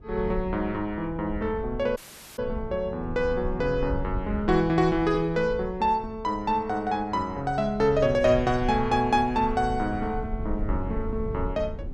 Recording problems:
rumble; below 88 Hz, SNR 11 dB
audio cutting out; at 2 s

